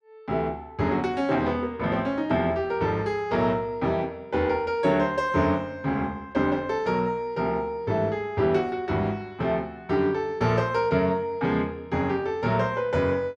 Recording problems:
none

